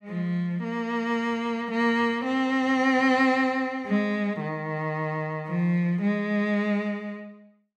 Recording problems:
none

